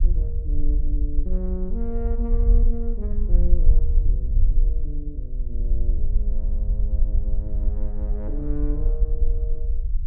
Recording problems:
rumble; below 48 Hz, strongest tone 18 Hz, SNR -11 dB

